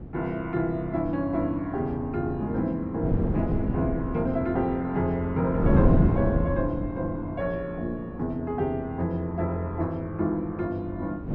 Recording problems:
wind noise; below 250 Hz, SNR 1 dB

